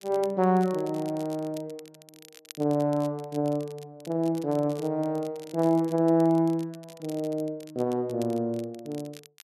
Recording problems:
crackling; vinyl, SNR 23 dB

